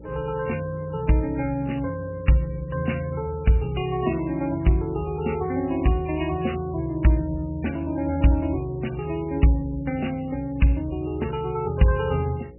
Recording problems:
lossy codec; MP3, log-spectral distance 3 dB, nothing above 2.9 kHz
electrical hum; 60 Hz, harmonics up to 540 Hz, SNR 20 dB

